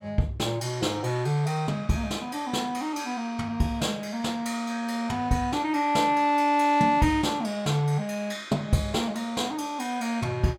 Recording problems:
none

